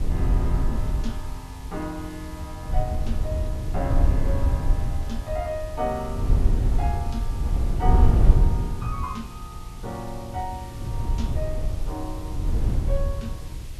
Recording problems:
background hiss; slope +2 dB per octave, SNR 15 dB
wind on the microphone; below 78 Hz, SNR -7 dB

